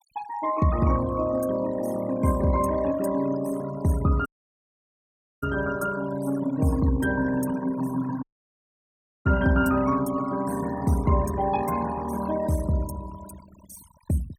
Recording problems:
denoising artefacts; signal-to-artefact ratio 15 dB
audio cutting out; at 4.5 s for 1 s and at 8 s for 1 s

